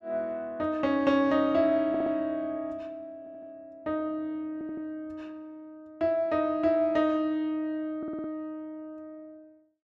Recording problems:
audio stuttering; 4 times, first at 2 s

